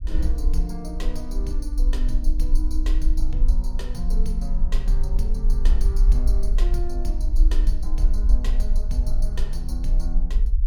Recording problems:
rumble; below 42 Hz, strongest tone 24 Hz, SNR -10 dB

